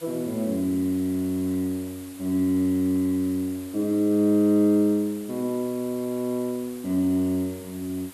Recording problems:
background hiss; slope -2 dB per octave, SNR 20 dB

